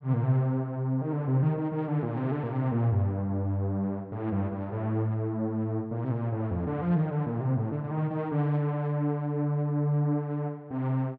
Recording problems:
none

